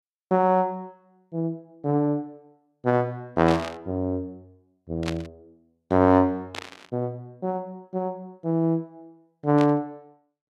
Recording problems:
static burst; 4 times, first at 3.5 s; peak -3 dB vs average level

